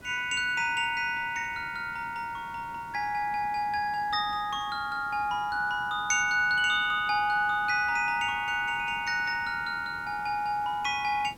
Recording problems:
hiss; slope -5 dB per octave, SNR 23 dB

